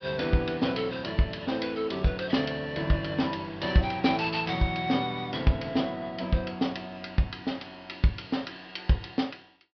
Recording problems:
low-pass filter; nothing above 5.5 kHz

